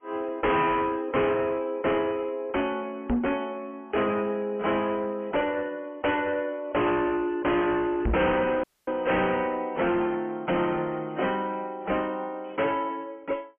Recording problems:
treble missing; nothing above 3.1 kHz
lossy codec; AAC, log-spectral distance 3 dB
distortion; hard clipping, uneven, signal-to-distortion ratio 6 dB
knock on the microphone; at 3 s and at 8 s; peak +4 dB vs average level
audio cutting out; at 8.5 s

